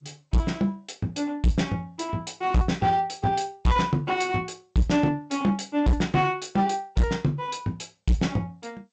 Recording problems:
lossy compression; G.722, log-spectral distance 3 dB, nothing above 7.3 kHz
distortion; hard clipping, uneven, signal-to-distortion ratio 7 dB

